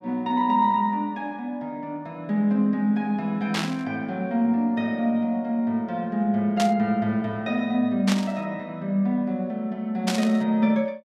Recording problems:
burst of static; 4 times, first at 3.5 s; peak 0 dB vs average level

